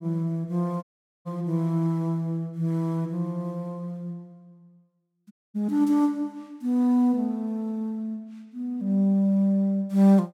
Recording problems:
dropout; at 1 s and at 5.5 s

